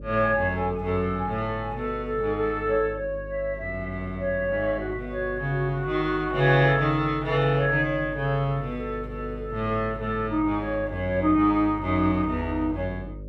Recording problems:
hum; 50 Hz, harmonics up to 600 Hz, SNR 14 dB

